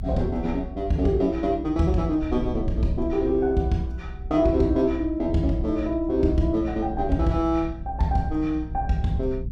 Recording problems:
rumble; below 84 Hz, SNR 10 dB

